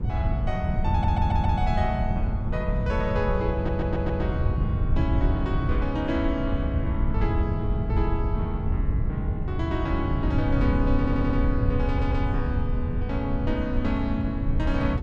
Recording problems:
wind noise; below 110 Hz, SNR -2 dB
audio stuttering; 4 times, first at 1 s

